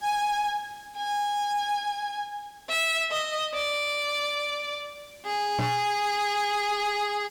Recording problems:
distorted audio; hard clipping, signal-to-distortion ratio 10 dB
background hiss; SNR 26 dB
microphone thump; at 5.5 s; peak +3 dB vs average level

